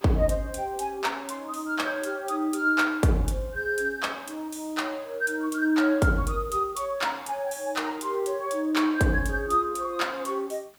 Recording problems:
hiss; slope -2 dB per octave, SNR 27 dB

